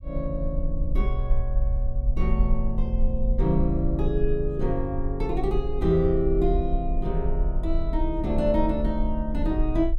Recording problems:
rumble; below 50 Hz, SNR 2 dB

